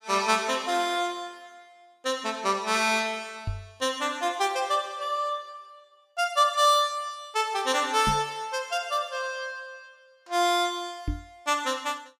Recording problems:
knock on the microphone; at 3.5 s, at 8 s and at 11 s; peak -1 dB vs average level

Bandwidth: 15 kHz